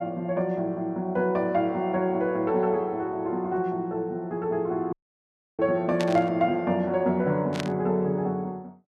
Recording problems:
dropout; at 5 s for 0.5 s
static burst; at 6 s and at 7.5 s; peak -2 dB vs average level

